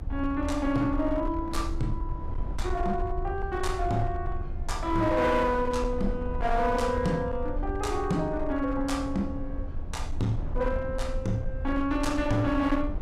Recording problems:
distorted audio; hard clipping, signal-to-distortion ratio 12 dB
low-frequency rumble; below 76 Hz, SNR 7 dB
wind on the microphone; below 510 Hz, SNR 19 dB

